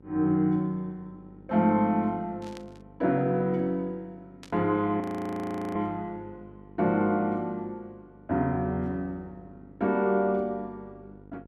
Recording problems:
hum; 50 Hz, harmonics up to 1 kHz, SNR 24 dB
static burst; at 2.5 s and at 4.5 s; peak -14 dB vs average level
audio freezing; at 5 s for 1 s

